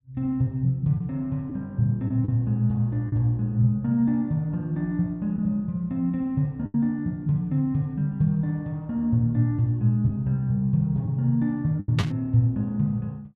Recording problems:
packet loss; 2% of the sound replaced, filled with the last packet
burst of static; at 12 s; peak -1 dB vs average level

